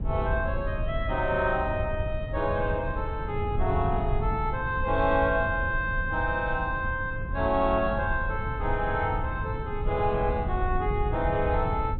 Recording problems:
low-pass filter; nothing above 4 kHz
rumble; below 100 Hz, SNR 5 dB

